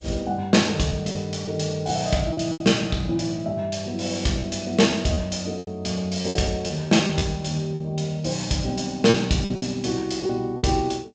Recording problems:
lossy compression; G.722, log-spectral distance 3 dB, nothing above 7.3 kHz
packet loss; 7% of the sound replaced, filled with repeated pitch periods

